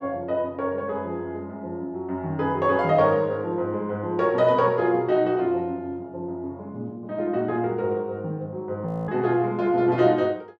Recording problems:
audio freezing; at 9 s

